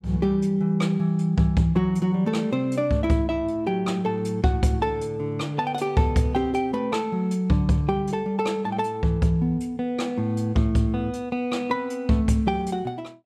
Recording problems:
none

